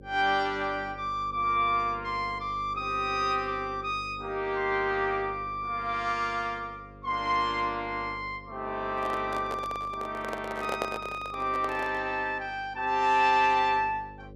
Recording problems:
hum; 50 Hz, harmonics up to 550 Hz, SNR 19 dB
microphone handling noise; from 9 to 12 s; peak +1 dB vs average level

